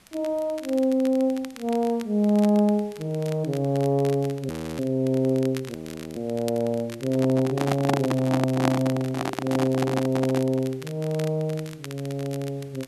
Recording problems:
background hiss; slope -2 dB per octave, SNR 29 dB
crackling; vinyl, SNR 19 dB
frozen audio; at 4.5 s and at 6 s
microphone handling noise; from 7 to 11 s; peak +4 dB vs average level

